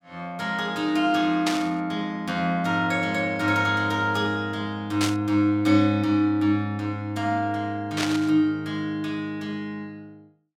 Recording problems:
static burst; at 1.5 s, at 5 s and at 8 s; peak +2 dB vs average level

